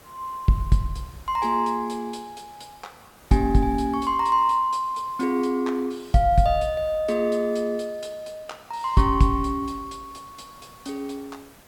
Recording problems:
hiss; slope -4 dB per octave, SNR 27 dB

